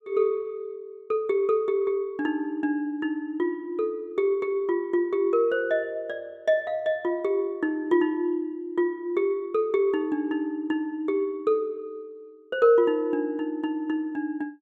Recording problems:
none

